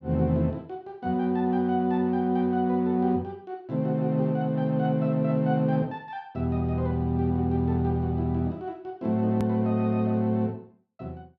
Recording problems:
click at an edit; at 9.5 s

